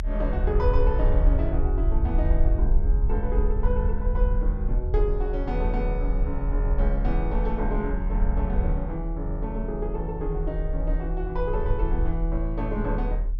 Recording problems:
treble missing; nothing above 8 kHz
rumble; below 52 Hz, strongest tone 38 Hz, SNR -3 dB

